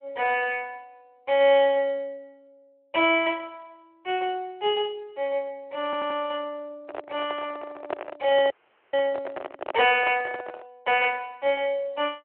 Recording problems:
phone line; 340 Hz to 3.2 kHz, Speex
audio stuttering; at 6 s
microphone handling noise; from 7 to 11 s; peak -2 dB vs average level
dropout; at 8.5 s

